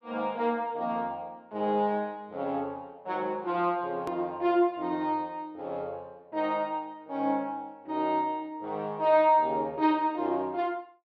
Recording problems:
click at an edit; at 4 s

